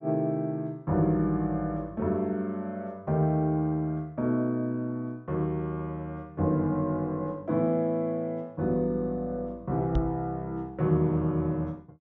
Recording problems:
treble missing; nothing above 8 kHz
microphone bump; at 10 s; peak +4 dB vs average level

